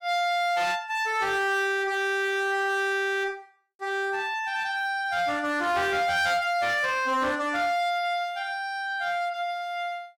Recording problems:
distortion; hard clipping, signal-to-distortion ratio 11 dB

